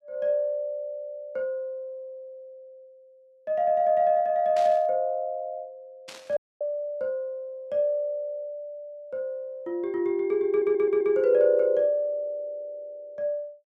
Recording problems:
burst of static; at 4.5 s and at 6 s; peak -11 dB vs average level
dropout; at 6.5 s
audio stuttering; at 10 s

